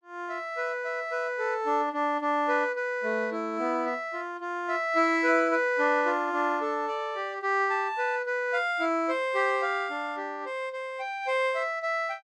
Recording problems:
none

